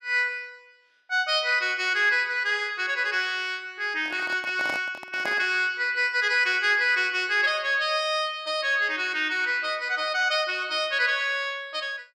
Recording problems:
microphone handling noise; from 4 to 5.5 s; peak -6 dB vs average level

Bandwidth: 14 kHz